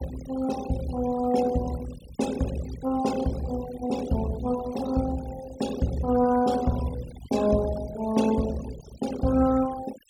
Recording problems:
denoising artefacts; signal-to-artefact ratio 15 dB

